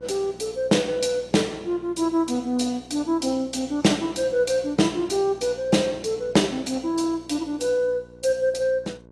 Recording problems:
lossy compression; AAC, log-spectral distance 2 dB, nothing above 11 kHz
hum; 60 Hz, harmonics up to 1.1 kHz, SNR 24 dB

